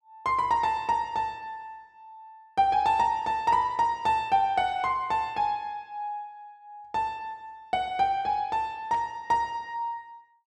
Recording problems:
burst of static; at 9 s; peak -16 dB vs average level

